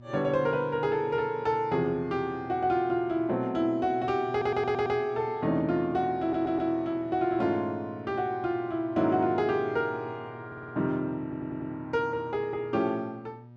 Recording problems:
hum; 60 Hz, harmonics up to 960 Hz, SNR 20 dB
audio stuttering; 4 times, first at 4.5 s

